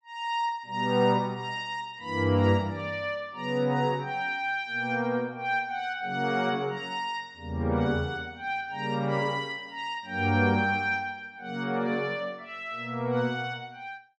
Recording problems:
none

